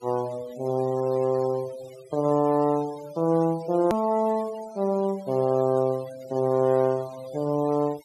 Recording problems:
noise reduction artefacts; signal-to-artefact ratio 22 dB
click at an edit; at 4 s

